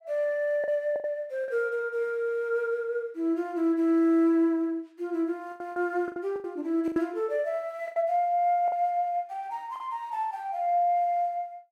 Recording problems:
lost packets; 6% of the sound replaced, filled with the last packet

